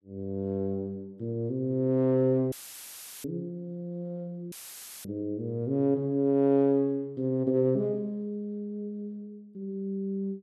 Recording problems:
audio cutting out; at 2.5 s for 0.5 s and at 4.5 s for 0.5 s; filled with static

